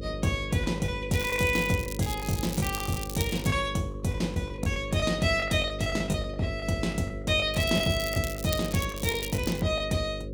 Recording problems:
electrical hum; 50 Hz, harmonics up to 550 Hz, SNR 9 dB
packet loss; 11% of the sound replaced, filled with the last packet
crackling; from 1 to 3.5 s and from 7.5 to 9.5 s; loose cable, SNR 10 dB

